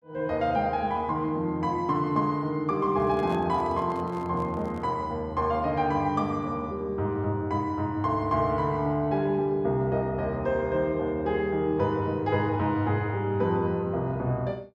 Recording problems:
handling noise; from 3 to 5 s; peak -11 dB vs average level

